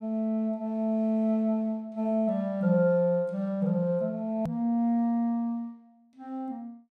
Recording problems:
hard cut with a click; at 4.5 s

